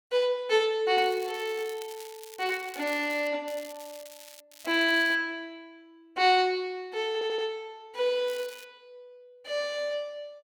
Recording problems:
crackle; 4 times, first at 1 s; loose cable, SNR 19 dB
audio stuttering; at 7 s

